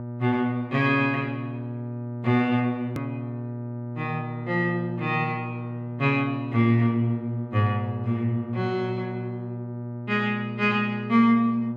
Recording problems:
electrical hum; 60 Hz, harmonics up to 1.2 kHz, SNR 8 dB
hard cut with a click; at 3 s

